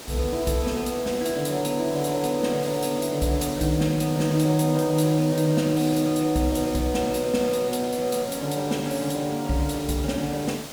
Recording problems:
background hiss; slope -3 dB per octave, SNR 13 dB

